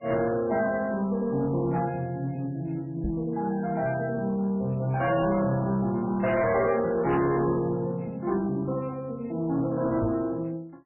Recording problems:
lossy codec; MP3, log-spectral distance 2 dB, nothing above 2.8 kHz
distortion; soft clipping, signal-to-distortion ratio 12 dB
microphone thump; at 3 s and at 10 s; peak +1 dB vs average level

